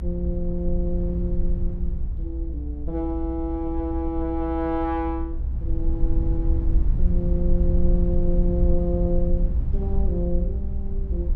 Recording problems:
low-frequency rumble; below 62 Hz, SNR -2 dB

